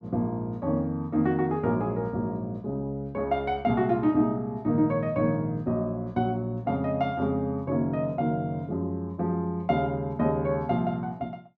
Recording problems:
none

